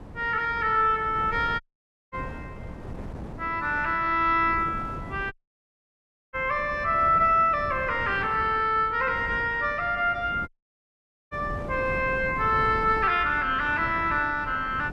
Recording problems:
wind noise; below 380 Hz, SNR 15 dB
dropout; at 1.5 s for 0.5 s, at 5.5 s for 1 s and at 10 s for 1 s

